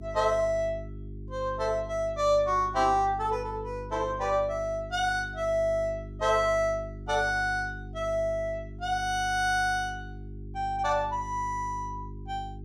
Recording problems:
electrical hum; 50 Hz, harmonics up to 400 Hz, SNR 13 dB

